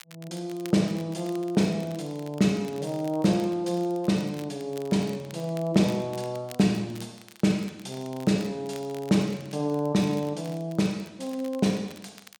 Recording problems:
crackle; vinyl, SNR 23 dB

